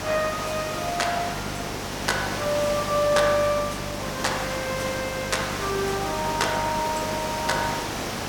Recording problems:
mains hum; 50 Hz, harmonics up to 600 Hz, SNR 12 dB
hiss; slope -4 dB per octave, SNR 4 dB

